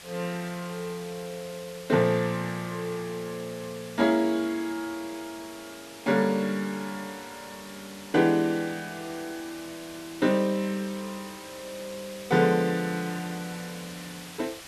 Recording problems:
hiss; slope 0 dB per octave, SNR 15 dB

